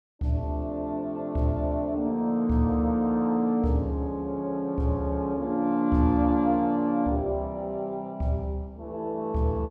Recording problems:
none

